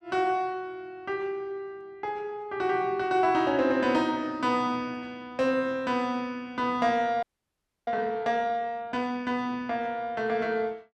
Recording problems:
audio freezing; at 7 s for 0.5 s

